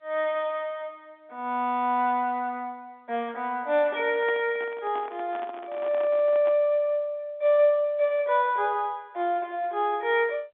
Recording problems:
telephone audio; 300 Hz to 3.7 kHz, G.711
microphone handling noise; from 4 to 6.5 s; peak -10 dB vs average level

